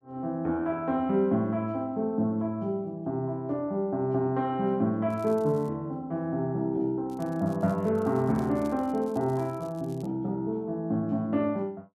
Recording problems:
crackle; at 5 s and from 7 to 10 s; loose cable, SNR 28 dB

